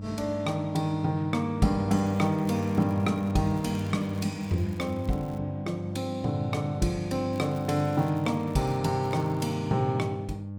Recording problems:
hum; 50 Hz, harmonics up to 600 Hz, SNR 9 dB
crackle; 4 times, first at 2 s; loose cable, SNR 27 dB

